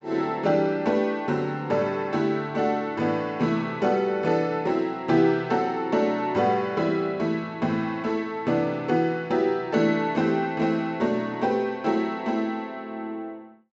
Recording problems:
treble cut off; nothing above 8 kHz

